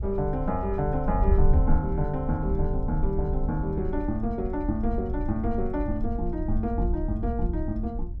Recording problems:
wind on the microphone; below 66 Hz, SNR 2 dB

